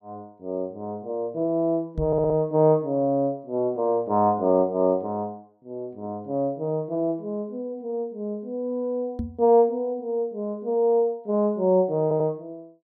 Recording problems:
microphone bump; at 2 s and at 9 s; peak -1 dB vs average level
stutter; at 2 s and at 12 s

